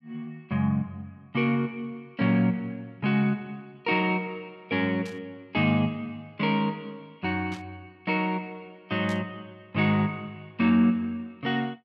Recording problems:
static burst; at 5 s, at 7.5 s and at 9 s; peak -12 dB vs average level

